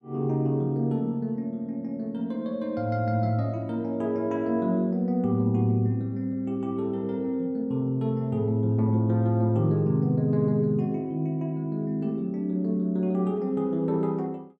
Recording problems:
none

